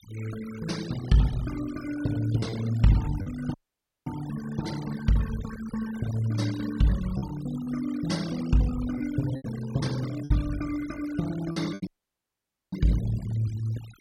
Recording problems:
denoising artefacts; signal-to-artefact ratio 16 dB
packet loss; 3% of the sound replaced, filled with repeated pitch periods
audio cutting out; at 3.5 s for 0.5 s and at 12 s for 1 s

